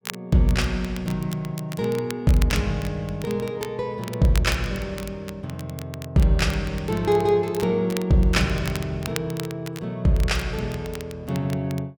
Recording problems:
crackling; vinyl, SNR 16 dB

